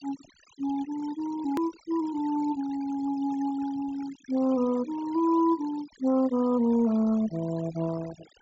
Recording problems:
low-pass filter; nothing above 8 kHz
denoising artefacts; signal-to-artefact ratio 20 dB
click at an edit; at 1.5 s

